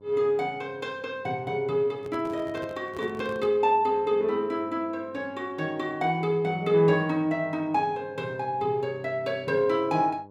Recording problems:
hum; 50 Hz, harmonics up to 1.1 kHz, SNR 25 dB
handling noise; from 2 to 3.5 s; peak -10 dB vs average level

